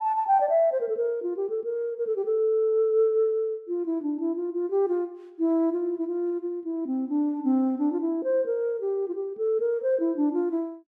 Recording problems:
none

